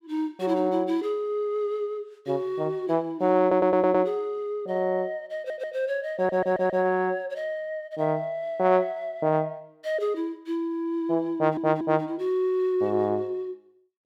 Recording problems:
audio stuttering; 4 times, first at 3.5 s

